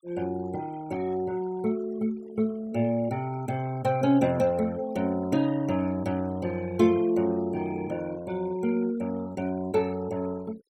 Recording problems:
denoising artefacts; signal-to-artefact ratio 21 dB

